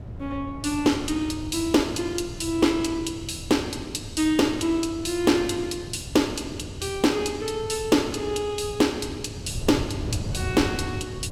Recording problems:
wind noise; below 160 Hz, SNR 11 dB

